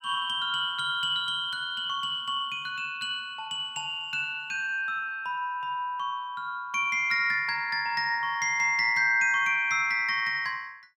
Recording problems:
none

